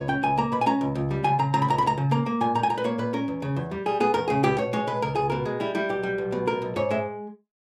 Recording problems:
none

